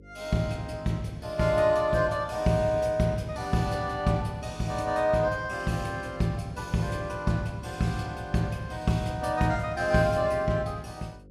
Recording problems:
electrical hum; 50 Hz, harmonics up to 550 Hz, SNR 23 dB

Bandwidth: 14 kHz